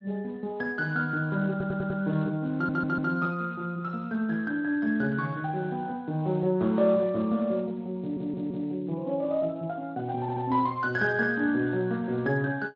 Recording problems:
codec artefacts; Speex, log-spectral distance 2 dB
stutter; 4 times, first at 1.5 s

